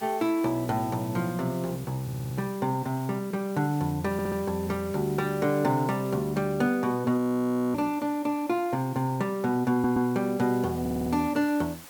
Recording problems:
background hiss; slope -2 dB per octave, SNR 19 dB
audio stuttering; 4 times, first at 2 s
frozen audio; at 7 s for 0.5 s

